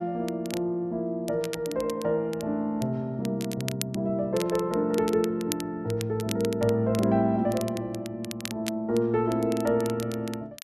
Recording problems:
crackle; vinyl, SNR 14 dB

